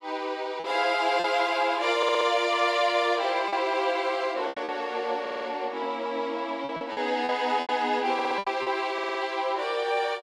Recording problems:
lost packets; 6% of the sound replaced, filled with repeated pitch periods
stutter; 4 times, first at 2 s

